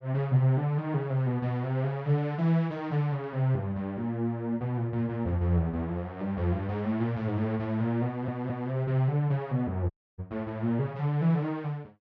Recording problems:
audio stuttering; at 8 s
dropout; at 10 s

